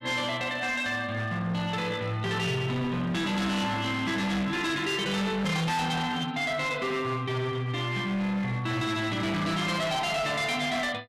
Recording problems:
distorted audio; hard clipping, signal-to-distortion ratio 8 dB

